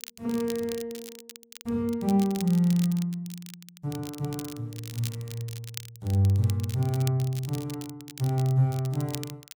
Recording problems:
crackling; vinyl, SNR 15 dB

